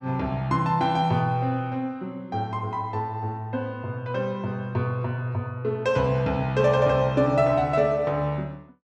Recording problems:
none

